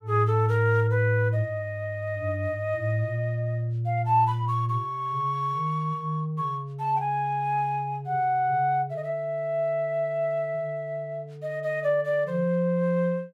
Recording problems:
none

